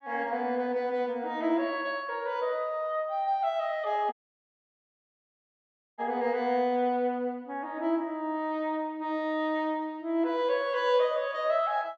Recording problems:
dropout; at 4 s for 2 s

